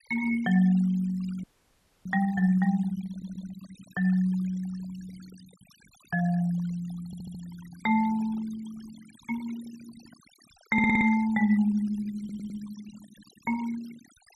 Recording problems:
noise reduction artefacts; signal-to-artefact ratio 20 dB
audio freezing; at 1.5 s for 0.5 s
audio stuttering; 4 times, first at 3 s

